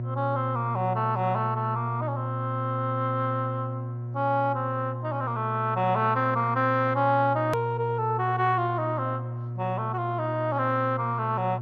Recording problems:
lossy codec; MP2, log-spectral distance 2 dB, nothing above 13.7 kHz
electrical hum; 60 Hz, harmonics up to 720 Hz, SNR 6 dB
edit click; at 7.5 s

